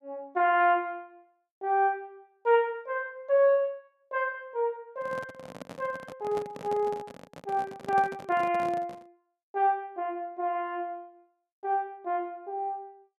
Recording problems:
handling noise; from 5 to 9 s; peak -6 dB vs average level

